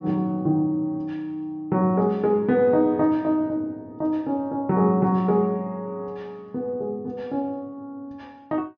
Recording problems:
treble missing; nothing above 6.5 kHz

